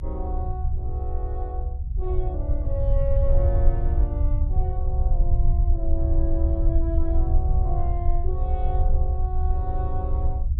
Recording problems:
low-frequency rumble; below 68 Hz, strongest tone 22 Hz, SNR -9 dB

